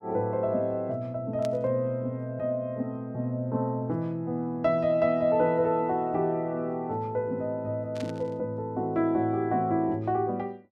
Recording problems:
static burst; at 1.5 s and at 8 s; peak -10 dB vs average level

